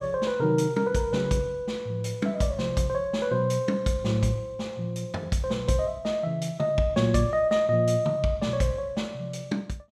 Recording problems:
none

